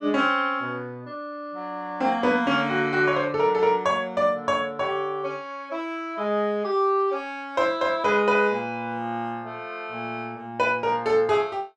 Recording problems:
none

